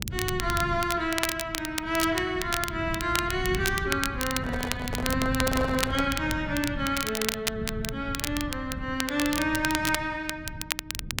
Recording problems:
rumble; below 160 Hz, SNR 9 dB
crackling; vinyl, SNR 4 dB
handling noise; from 4.5 to 6 s; peak -3 dB vs average level

